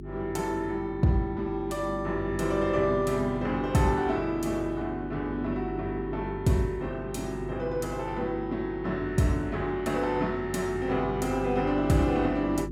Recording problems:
mains hum; 50 Hz, harmonics up to 400 Hz, SNR 10 dB

